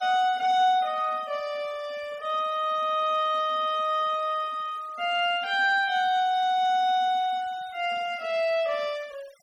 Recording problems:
denoising artefacts; signal-to-artefact ratio 25 dB

